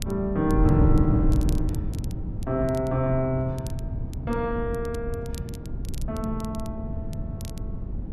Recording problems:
wind noise; below 150 Hz, SNR 2 dB
crackle; vinyl, SNR 21 dB

